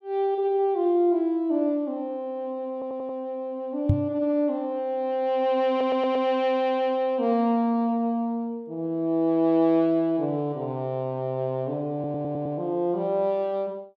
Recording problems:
audio stuttering; at 2.5 s, at 5.5 s and at 12 s
microphone thump; at 4 s; peak +7 dB vs average level

